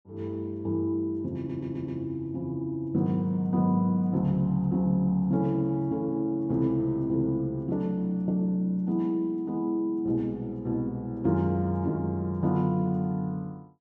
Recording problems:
stutter; at 1.5 s

